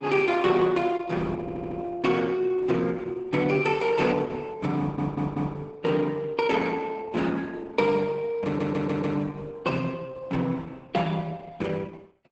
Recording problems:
codec artefacts; Opus, log-spectral distance 3 dB, nothing above 8 kHz
audio stuttering; at 1.5 s, at 5 s and at 8.5 s

